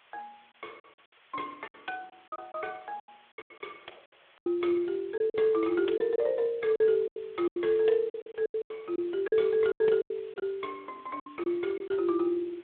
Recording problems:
phone line; 300 Hz to 3.5 kHz, Speex
background hiss; SNR 30 dB
lost packets; 13% of the sound replaced, filled with silence

